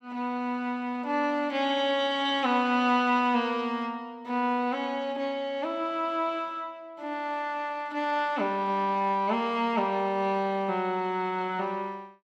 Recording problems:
none

